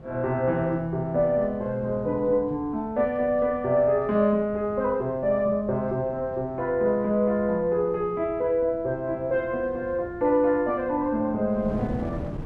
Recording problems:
wind on the microphone; below 320 Hz, SNR 17 dB

